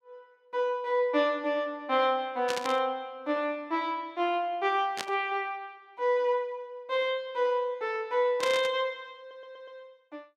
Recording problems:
static burst; at 2.5 s, at 5 s and at 8.5 s; peak 0 dB vs average level
audio stuttering; at 9 s

